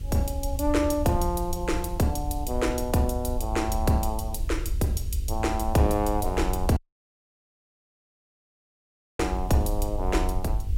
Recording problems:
electrical hum; 50 Hz, harmonics up to 500 Hz, SNR 19 dB
background hiss; SNR 27 dB
low-frequency rumble; below 70 Hz, SNR 5 dB
dropout; at 7 s for 2.5 s

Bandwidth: 16 kHz